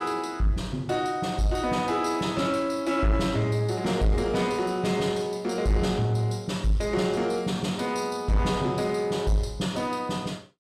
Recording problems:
distortion; soft clipping, signal-to-distortion ratio 11 dB

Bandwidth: 14.5 kHz